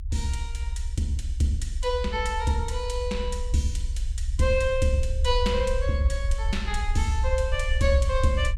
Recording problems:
rumble; below 66 Hz, SNR 3 dB

